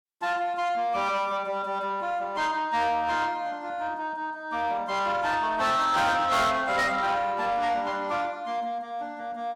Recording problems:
distortion; soft clipping, signal-to-distortion ratio 8 dB

